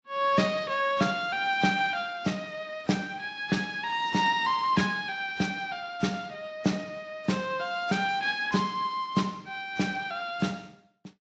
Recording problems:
lossy codec; Speex, then AAC, log-spectral distance 4 dB, nothing above 7.3 kHz

